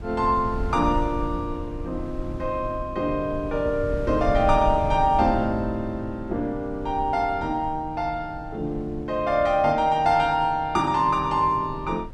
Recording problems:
wind noise; below 100 Hz, SNR 12 dB

